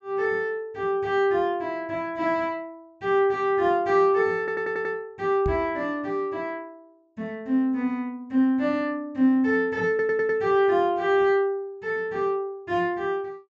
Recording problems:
treble missing; nothing above 8 kHz
stutter; at 4.5 s and at 10 s
microphone bump; at 5.5 s; peak -2 dB vs average level

